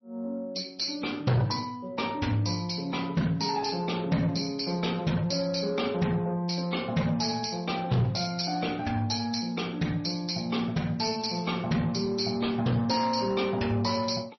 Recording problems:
lossy codec; MP3, log-spectral distance 6 dB, nothing above 5.8 kHz
distorted audio; soft clipping, signal-to-distortion ratio 11 dB

